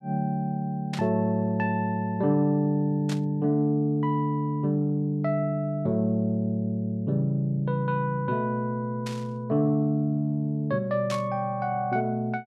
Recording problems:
burst of static; 4 times, first at 1 s; peak -6 dB vs average level

